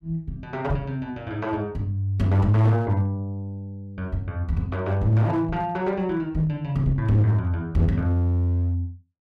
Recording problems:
distortion; hard clipping, uneven, signal-to-distortion ratio 9 dB

